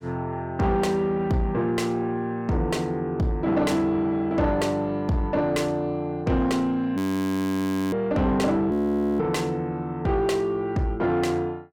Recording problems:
distorted audio; soft clipping, signal-to-distortion ratio 10 dB
frozen audio; at 7 s for 1 s and at 8.5 s

